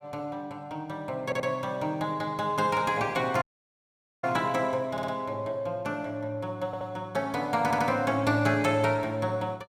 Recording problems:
audio stuttering; 4 times, first at 1 s
dropout; at 3.5 s for 1 s

